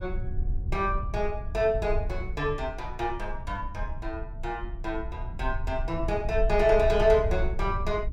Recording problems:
rumble; below 66 Hz, SNR 6 dB

